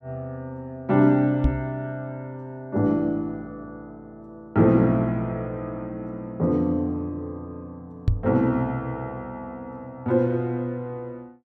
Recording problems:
knock on the microphone; at 1.5 s and at 8 s; peak +7 dB vs average level

